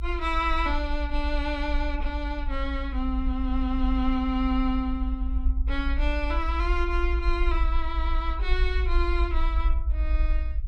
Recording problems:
low-frequency rumble; below 56 Hz, SNR 0 dB

